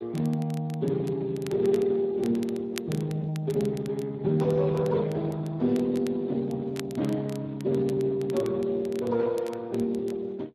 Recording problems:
lossy codec; Speex, log-spectral distance 2 dB
crackle; vinyl, SNR 21 dB

